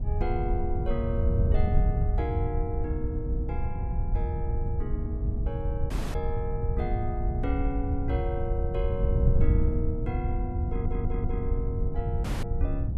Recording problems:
hum; 60 Hz, harmonics up to 480 Hz, SNR 17 dB
wind noise; below 96 Hz, SNR -6 dB
audio cutting out; at 6 s and at 12 s
audio stuttering; at 11 s

